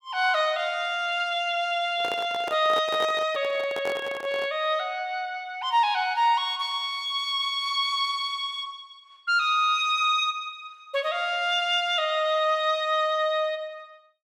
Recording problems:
handling noise; from 2 to 4.5 s; peak -5 dB vs average level

